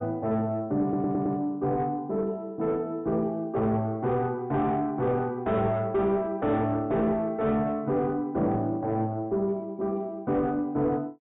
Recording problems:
treble missing; nothing above 4 kHz
distortion; soft clipping, signal-to-distortion ratio 10 dB
stutter; at 1 s

